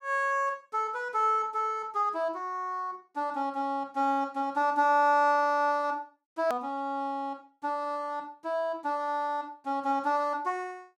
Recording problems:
edit click; at 6.5 s

